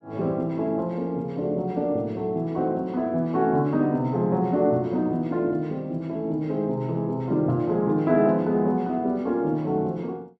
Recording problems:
none

